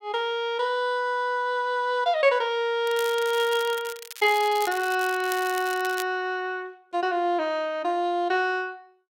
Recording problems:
crackle; from 3 to 6 s; loose cable, SNR 13 dB

